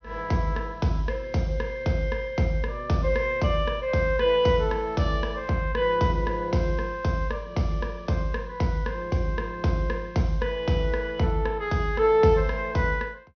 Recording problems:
low-pass filter; nothing above 6.3 kHz

